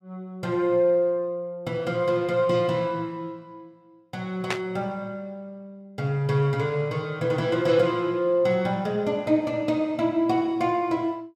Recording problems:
static burst; at 4.5 s; peak +1 dB vs average level

